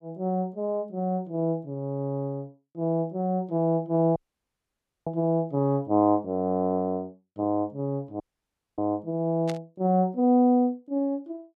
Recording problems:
dropout; at 4 s for 1 s and at 8 s for 0.5 s
static burst; at 9.5 s; peak -7 dB vs average level

